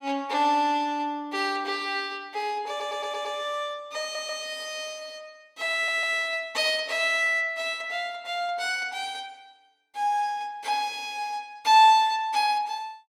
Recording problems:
audio stuttering; at 2.5 s, at 4 s and at 5.5 s

